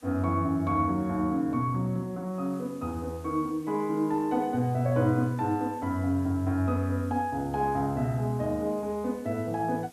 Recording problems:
background hiss; slope -1 dB per octave, SNR 27 dB

